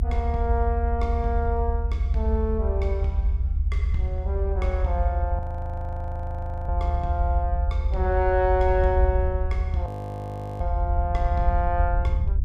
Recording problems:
rumble; below 74 Hz, SNR -2 dB
frozen audio; at 5.5 s for 1.5 s and at 10 s for 0.5 s

